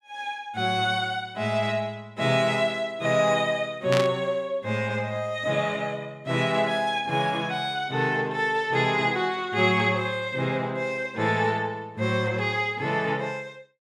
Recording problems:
burst of static; at 4 s; peak +1 dB vs average level

